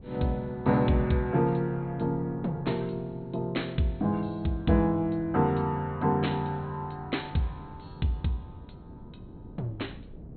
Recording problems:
treble missing; nothing above 4.3 kHz
wind noise; below 250 Hz, SNR 20 dB

